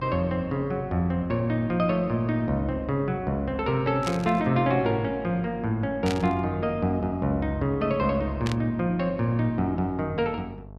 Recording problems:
electrical hum; 50 Hz, harmonics up to 1.1 kHz, SNR 18 dB
burst of static; at 4 s, at 6 s and at 8.5 s; peak -3 dB vs average level

